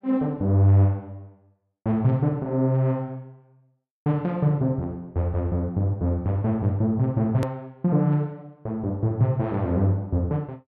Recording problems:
click at an edit; at 7.5 s

